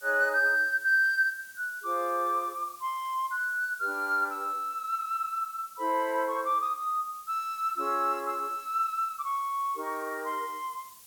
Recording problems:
background hiss; slope +1 dB per octave, SNR 21 dB

